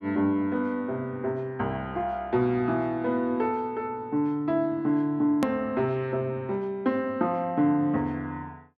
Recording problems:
hard cut with a click; at 5.5 s

